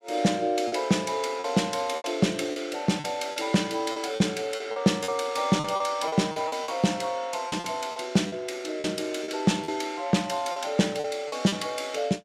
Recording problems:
lost packets; 10% of the sound replaced, filled with repeated pitch periods

